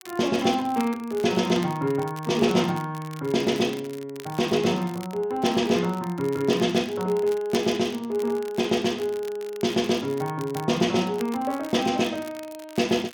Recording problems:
crackle; vinyl, SNR 20 dB

